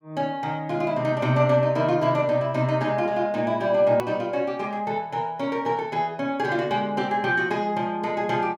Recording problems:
hard cut with a click; at 4 s

